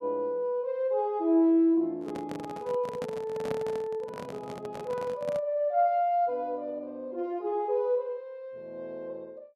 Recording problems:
handling noise; from 2 to 5.5 s; peak -2 dB vs average level

